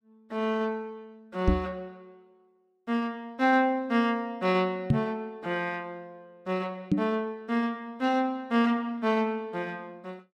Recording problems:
knock on the microphone; at 1.5 s, at 5 s and at 7 s; peak +9 dB vs average level

